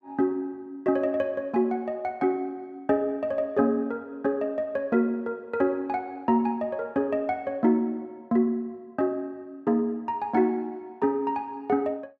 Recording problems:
none

